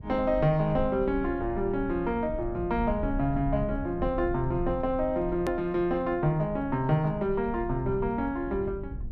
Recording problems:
low-frequency rumble; below 82 Hz, SNR 11 dB
hard cut with a click; at 5.5 s

